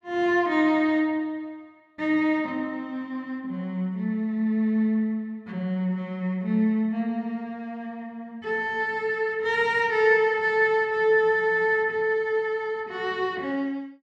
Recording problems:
none

